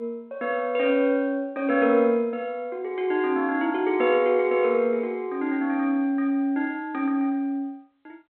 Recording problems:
phone line; 300 Hz to 3.5 kHz, G.726

